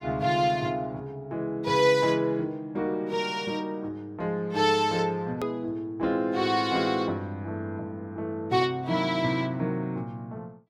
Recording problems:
click at an edit; at 5.5 s

